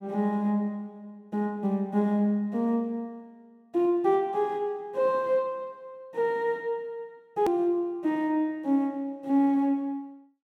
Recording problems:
hard cut with a click; at 7.5 s

